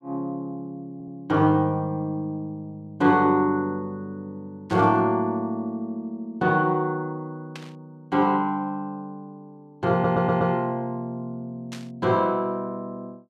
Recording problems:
stutter; at 1 s and at 10 s
static burst; at 4.5 s, at 7.5 s and at 12 s; peak -10 dB vs average level

